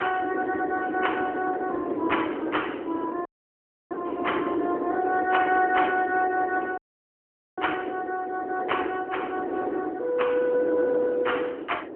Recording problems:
phone line; 260 Hz to 3.1 kHz, AMR-NB
wind on the microphone; below 510 Hz, SNR 4 dB
audio cutting out; at 3.5 s for 0.5 s and at 7 s for 1 s

